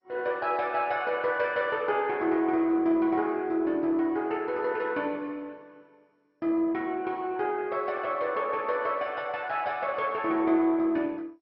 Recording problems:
lossy compression; MP2, log-spectral distance 2 dB, nothing above 5.5 kHz

